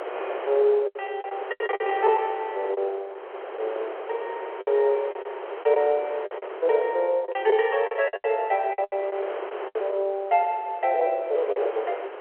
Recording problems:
phone line; 340 Hz to 3.3 kHz, G.711
wind on the microphone; below 970 Hz, SNR 11 dB
packet loss; 11% of the sound replaced, filled with the last packet

